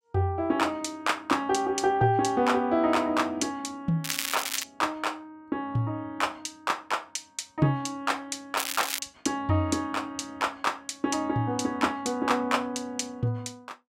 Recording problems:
crackling; at 4 s and at 8.5 s; loose cable, SNR 4 dB

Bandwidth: 16 kHz